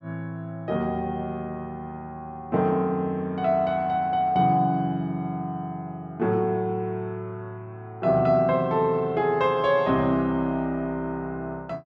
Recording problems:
none

